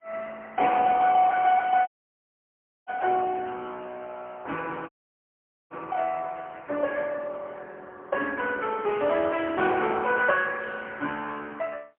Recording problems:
phone line; 240 Hz to 3.4 kHz, AMR-NB, then MP3
dropout; at 2 s for 1 s and at 5 s for 1 s

